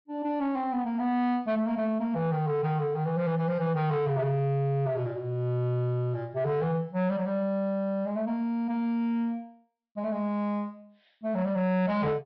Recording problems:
treble cut off; nothing above 5.5 kHz
distorted audio; soft clipping, signal-to-distortion ratio 12 dB

